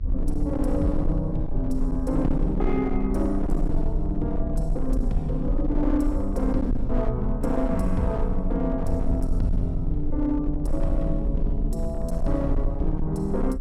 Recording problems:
distortion; hard clipping, signal-to-distortion ratio 12 dB
electrical hum; 50 Hz, harmonics up to 700 Hz, SNR 23 dB
rumble; below 48 Hz, strongest tone 20 Hz, SNR 3 dB

